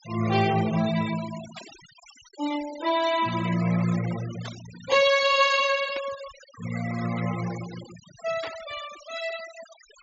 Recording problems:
low-pass filter; nothing above 8 kHz
noise reduction artefacts; signal-to-artefact ratio 15 dB
static burst; 4 times, first at 1.5 s; peak -8 dB vs average level

